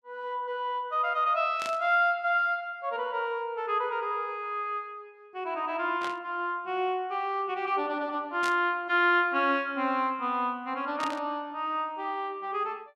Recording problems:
burst of static; 4 times, first at 1.5 s; peak -4 dB vs average level

